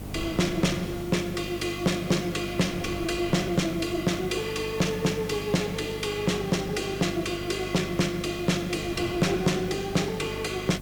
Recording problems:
distortion; soft clipping, signal-to-distortion ratio 12 dB
hum; 50 Hz, harmonics up to 850 Hz, SNR 12 dB
background hiss; slope +2 dB per octave, SNR 21 dB
wind noise; below 340 Hz, SNR 18 dB

